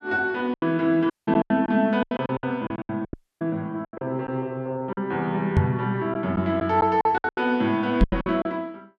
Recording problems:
lost packets; 13% of the sound replaced, filled with silence
audio cutting out; at 1 s and at 3 s
knock on the microphone; at 3 s, at 5.5 s and at 8 s; peak +9 dB vs average level

